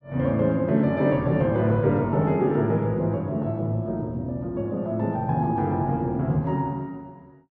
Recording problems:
low-pass filter; nothing above 8 kHz

